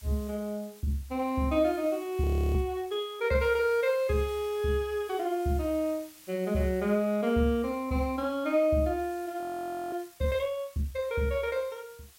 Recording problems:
hiss; slope +2 dB per octave, SNR 23 dB
audio freezing; at 2 s and at 9.5 s for 0.5 s

